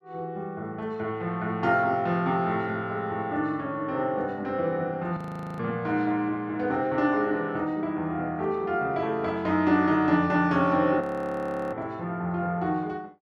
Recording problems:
frozen audio; at 5 s and at 11 s for 0.5 s

